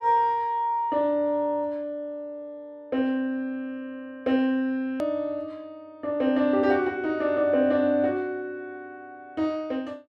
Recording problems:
hard cut with a click; at 5 s

